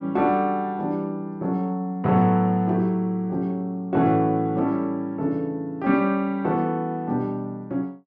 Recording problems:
none

